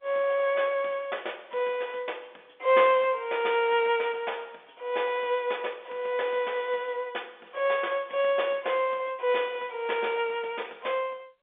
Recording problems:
telephone audio; 300 Hz to 3.6 kHz, G.711

